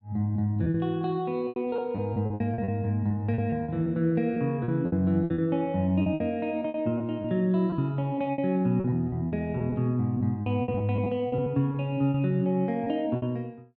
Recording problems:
packet loss; 13% of the sound replaced, filled with repeated pitch periods

